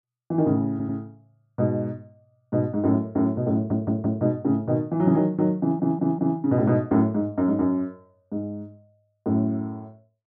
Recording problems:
audio stuttering; at 0.5 s, at 3.5 s and at 5.5 s

